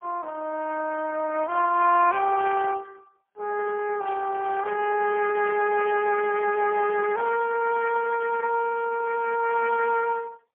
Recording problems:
telephone audio; 340 Hz to 2.7 kHz, AMR-NB, then MP3
burst of static; at 4 s and at 5.5 s; peak -8 dB vs average level

